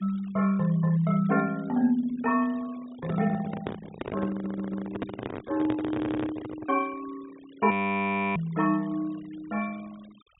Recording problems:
treble cut off; nothing above 4 kHz
noise reduction artefacts; signal-to-artefact ratio 22 dB
microphone handling noise; from 3 to 6.5 s; peak -1 dB vs average level
audio stuttering; at 4.5 s and at 6 s
frozen audio; at 7.5 s for 0.5 s

